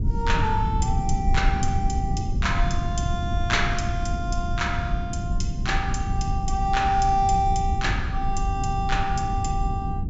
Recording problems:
treble missing; nothing above 8 kHz
low-frequency rumble; below 110 Hz, SNR 1 dB

